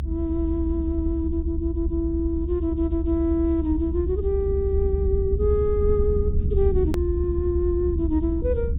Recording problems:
treble missing; nothing above 4 kHz
low-frequency rumble; below 74 Hz, SNR 2 dB
hard cut with a click; at 7 s

